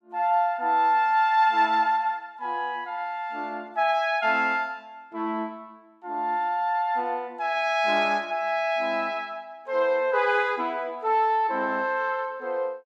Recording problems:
none

